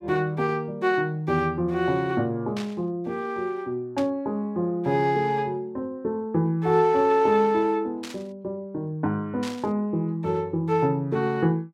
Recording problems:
static burst; 4 times, first at 2.5 s; peak -8 dB vs average level

